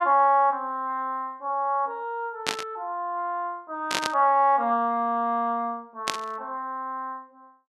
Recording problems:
burst of static; at 2.5 s, at 4 s and at 6 s; peak +5 dB vs average level

